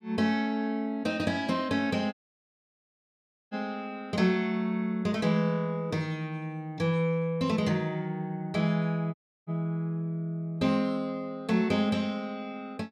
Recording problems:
dropout; at 2 s for 1.5 s and at 9 s

